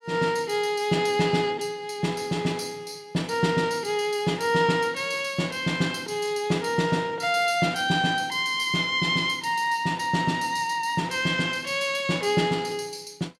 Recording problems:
none

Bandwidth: 16 kHz